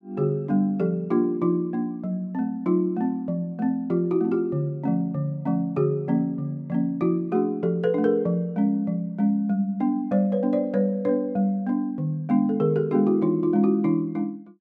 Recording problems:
none

